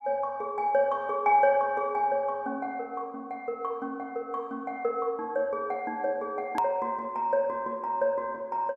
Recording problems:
edit click; at 6.5 s

